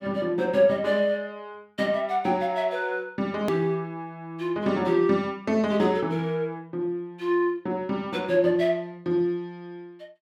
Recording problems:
click at an edit; at 3.5 s

